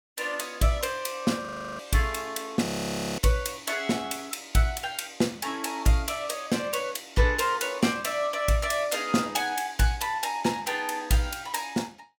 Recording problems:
audio freezing; at 1.5 s and at 2.5 s for 0.5 s

